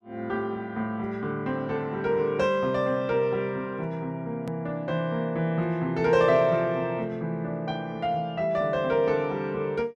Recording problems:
hard cut with a click; at 4.5 s

